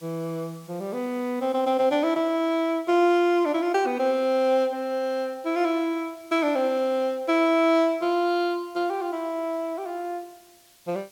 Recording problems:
background hiss; slope +1 dB per octave, SNR 29 dB

